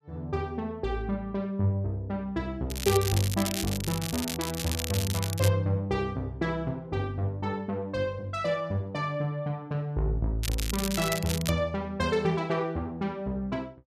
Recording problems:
crackle; from 2.5 to 5.5 s and from 10 to 12 s; loose cable, SNR 4 dB

